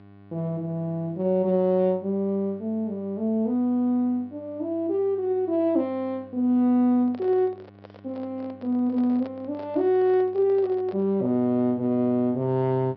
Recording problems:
treble missing; nothing above 5.5 kHz
electrical hum; 50 Hz, harmonics up to 1.9 kHz, SNR 25 dB
microphone handling noise; from 7 to 11 s; peak -13 dB vs average level

